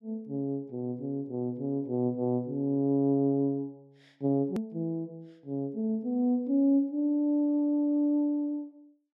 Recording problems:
hard cut with a click; at 4.5 s

